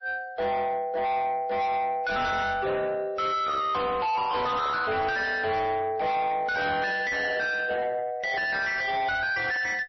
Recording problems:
lossy compression; MP3, then MP3, log-spectral distance 2 dB, nothing above 5.8 kHz
distortion; soft clipping, signal-to-distortion ratio 6 dB

